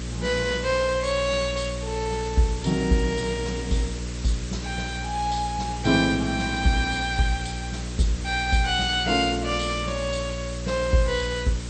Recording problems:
codec artefacts; MP2, log-spectral distance 10 dB, nothing above 8.5 kHz
hum; 60 Hz, harmonics up to 600 Hz, SNR 8 dB
hiss; slope +1 dB per octave, SNR 13 dB

